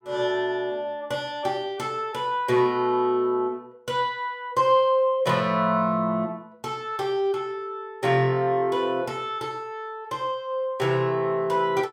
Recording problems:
none

